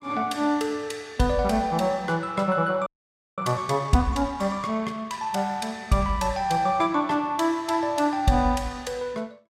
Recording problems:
frozen audio; at 3 s for 0.5 s

